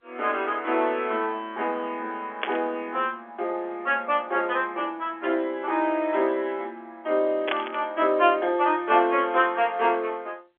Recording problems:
phone line; 280 Hz to 3.4 kHz, G.711
burst of static; at 2.5 s and at 7.5 s; peak +2 dB vs average level

